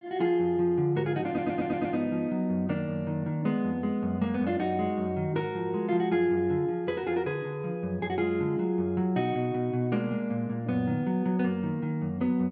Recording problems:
audio stuttering; at 1.5 s

